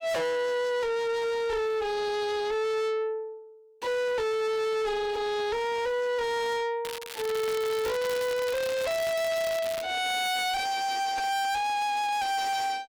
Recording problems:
distorted audio; soft clipping, signal-to-distortion ratio 6 dB
crackling; from 7 to 10 s; loose cable, SNR 9 dB

